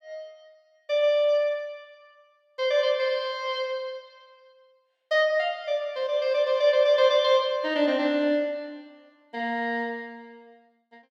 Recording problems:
none

